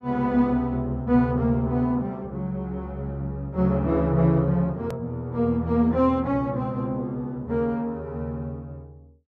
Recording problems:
click at an edit; at 5 s

